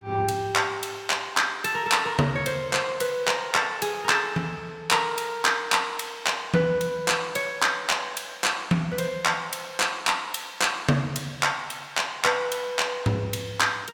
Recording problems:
none

